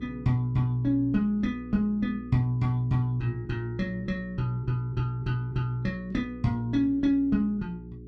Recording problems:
hum; 60 Hz, harmonics up to 420 Hz, SNR 16 dB

